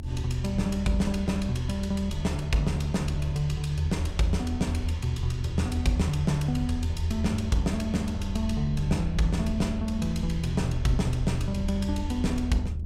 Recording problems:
low-frequency rumble; below 80 Hz, strongest tone 78 Hz, SNR 5 dB

